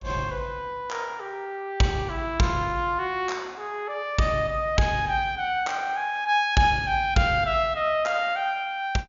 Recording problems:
low-pass filter; nothing above 7.2 kHz

